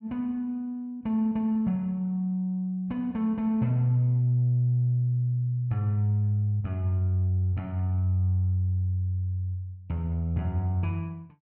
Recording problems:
none

